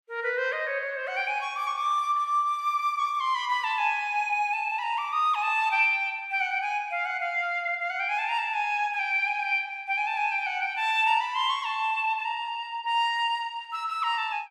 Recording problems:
none

